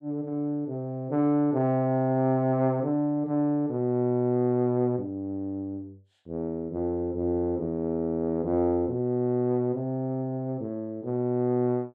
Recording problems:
none

